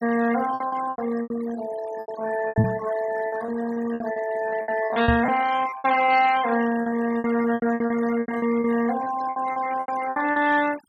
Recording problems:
denoising artefacts; signal-to-artefact ratio 13 dB
packet loss; 16% of the sound replaced, filled with repeated pitch periods
microphone bump; at 2.5 s and at 5 s; peak +7 dB vs average level

